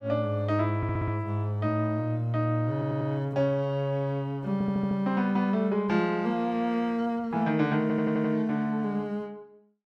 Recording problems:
audio stuttering; 4 times, first at 1 s

